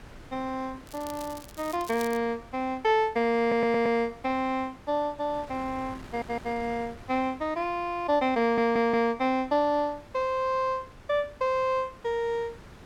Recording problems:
wind on the microphone; below 1.2 kHz, SNR 21 dB
crackle; from 1 to 2 s; loose cable, SNR 18 dB
stutter; at 3.5 s, at 6 s and at 8.5 s

